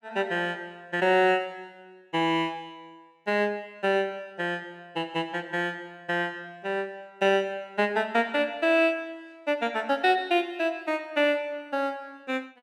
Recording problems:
none

